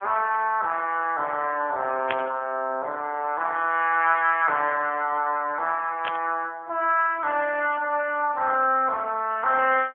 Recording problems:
phone line; 190 Hz to 3.4 kHz, AMR-NB
burst of static; at 2 s and at 6 s; peak -2 dB vs average level

